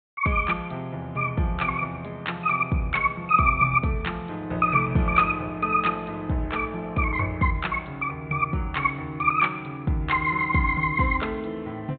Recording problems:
treble missing; nothing above 4 kHz

